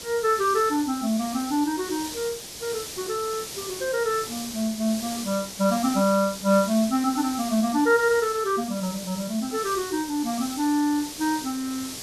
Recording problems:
hiss; SNR 10 dB

